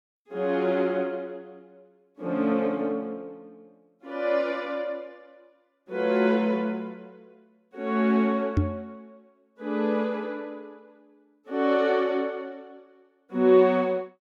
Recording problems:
knock on the microphone; at 8.5 s; peak +6 dB vs average level

